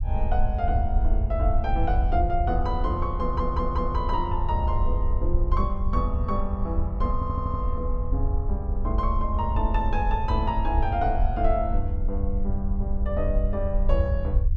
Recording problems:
low-frequency rumble; below 72 Hz, SNR -2 dB
stutter; at 3 s and at 7 s

